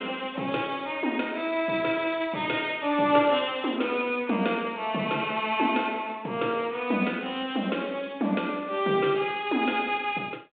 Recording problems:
phone line; 150 Hz to 3.7 kHz, G.726

